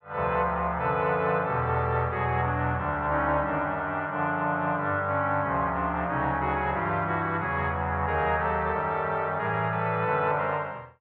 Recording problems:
none

